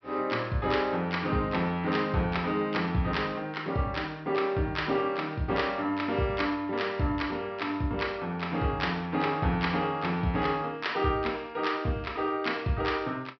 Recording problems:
low-pass filter; nothing above 5.5 kHz

